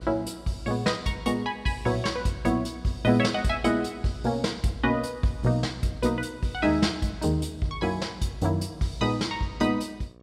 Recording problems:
hum; 60 Hz, harmonics up to 1.3 kHz, SNR 26 dB

